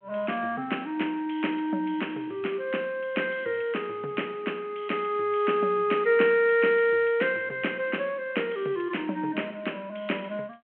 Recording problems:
telephone audio; 220 Hz to 3.2 kHz, G.726

